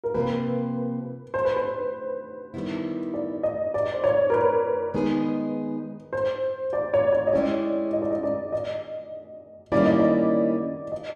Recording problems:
none

